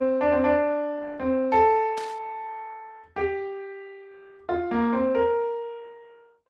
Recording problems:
lossy codec; Opus, log-spectral distance 2 dB
static burst; at 2 s; peak -11 dB vs average level

